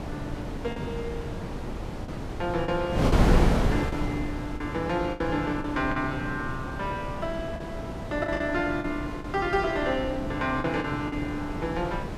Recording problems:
wind noise; below 420 Hz, SNR 2 dB
packet loss; 6% of the sound replaced, filled with the last packet

